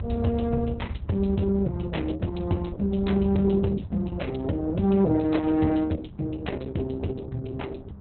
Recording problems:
codec artefacts; Opus, log-spectral distance 3 dB, nothing above 4 kHz
mains hum; 50 Hz, harmonics up to 1.3 kHz, SNR 18 dB
low-frequency rumble; below 80 Hz, strongest tone 74 Hz, SNR 8 dB

